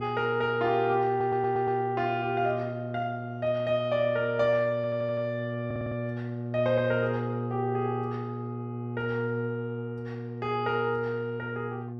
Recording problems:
hum; 60 Hz, harmonics up to 840 Hz, SNR 7 dB
stutter; at 1 s, at 5 s and at 5.5 s

